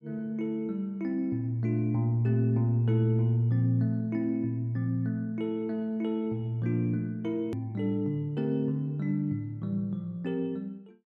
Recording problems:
hard cut with a click; at 7.5 s

